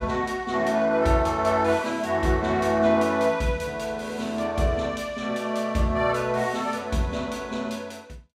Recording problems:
none

